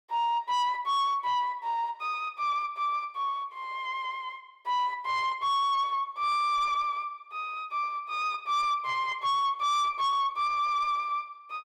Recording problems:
distortion; soft clipping, signal-to-distortion ratio 10 dB

